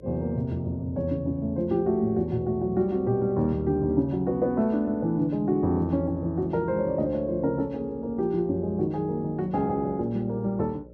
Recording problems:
electrical hum; 60 Hz, harmonics up to 600 Hz, SNR 22 dB

